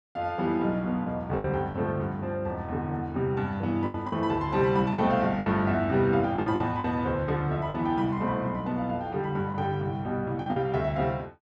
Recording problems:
packet loss; 5% of the sound replaced, filled with the last packet

